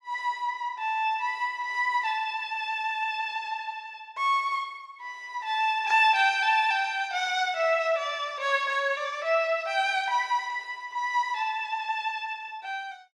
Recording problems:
none

